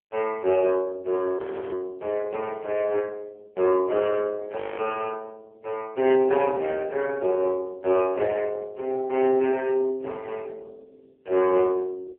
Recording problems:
telephone audio; 320 Hz to 2.8 kHz, AMR-NB
frozen audio; at 1.5 s and at 4.5 s

